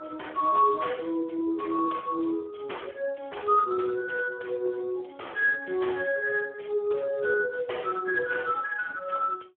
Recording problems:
telephone audio; 280 Hz to 3.6 kHz, Speex

